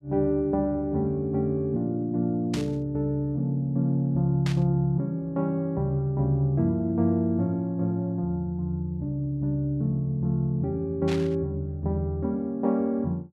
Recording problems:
static burst; at 2.5 s, at 4.5 s and at 11 s; peak -5 dB vs average level

